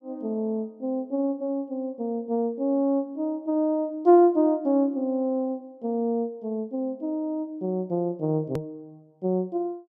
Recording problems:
hard cut with a click; at 8.5 s

